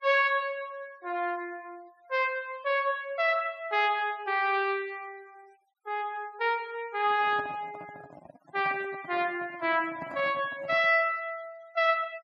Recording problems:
noise reduction artefacts; signal-to-artefact ratio 26 dB
handling noise; from 7 to 11 s; peak -10 dB vs average level

